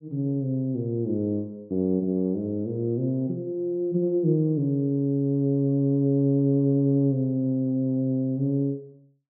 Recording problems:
treble cut off; nothing above 4 kHz

